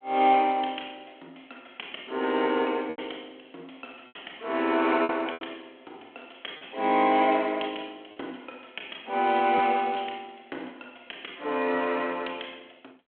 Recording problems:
phone line; 220 Hz to 3.4 kHz, G.726
packet loss; 3% of the sound replaced, filled with repeated pitch periods

